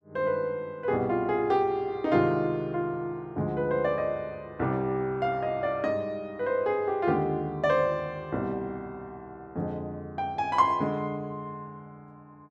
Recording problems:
none

